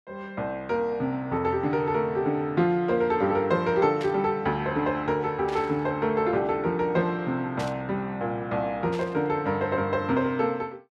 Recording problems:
burst of static; 4 times, first at 4 s; peak -8 dB vs average level

